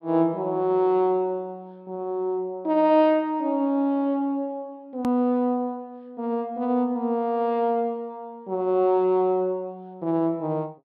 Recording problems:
treble cut off; nothing above 5.5 kHz
edit click; at 5 s

